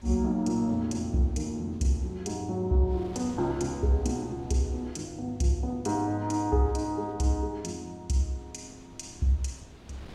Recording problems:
wind noise; below 610 Hz, SNR 23 dB

